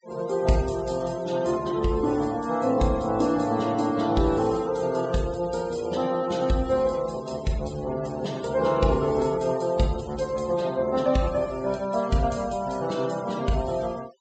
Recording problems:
treble missing; nothing above 8 kHz
denoising artefacts; signal-to-artefact ratio 20 dB

